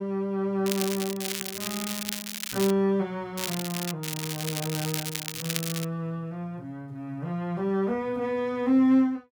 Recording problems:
crackling; from 0.5 to 2.5 s, at 3.5 s and from 4 to 6 s; loose cable, SNR 4 dB

